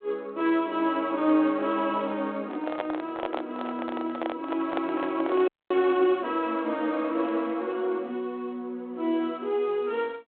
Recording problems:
telephone audio; 220 Hz to 3.6 kHz, G.726
microphone handling noise; from 2.5 to 5.5 s; peak 0 dB vs average level
frozen audio; at 5.5 s

